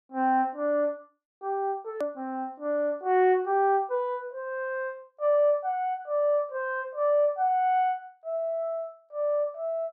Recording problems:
click at an edit; at 2 s

